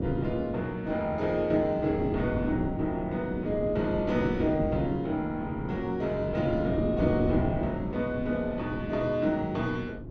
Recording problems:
wind on the microphone; below 330 Hz, SNR 6 dB

